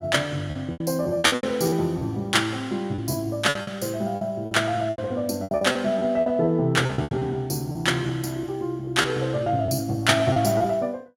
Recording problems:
packet loss; 12% of the sound replaced, filled with repeated pitch periods

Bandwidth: 16.5 kHz